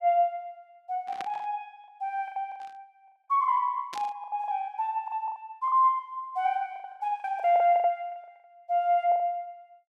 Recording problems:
lost packets; 14% of the sound replaced, filled with the last packet
burst of static; at 1 s, at 2.5 s and at 4 s; peak -8 dB vs average level

